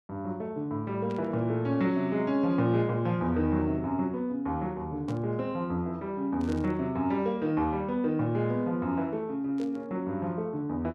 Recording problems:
static burst; 4 times, first at 1 s; peak -14 dB vs average level

